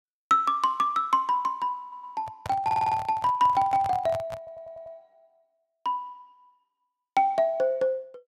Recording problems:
audio stuttering; at 2 s, at 2.5 s and at 4.5 s
microphone handling noise; from 2 to 5 s; peak -6 dB vs average level

